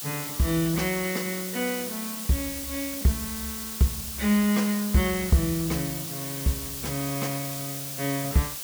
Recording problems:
background hiss; SNR 5 dB

